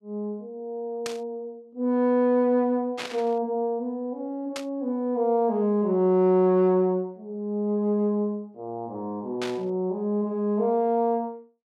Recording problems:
burst of static; 4 times, first at 1 s; peak -4 dB vs average level

